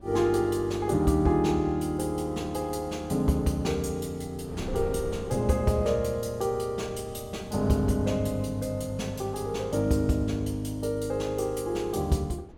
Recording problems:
wind on the microphone; below 320 Hz, SNR 19 dB

